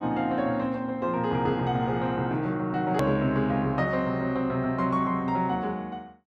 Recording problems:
hard cut with a click; at 3 s

